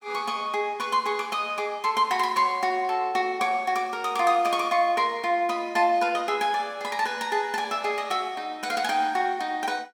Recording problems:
none

